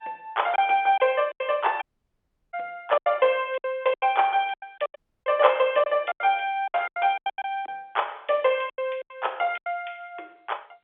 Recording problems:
telephone audio; 320 Hz to 3.5 kHz, G.711
lost packets; 14% of the sound replaced, filled with silence
dropout; at 2 s for 0.5 s and at 5 s

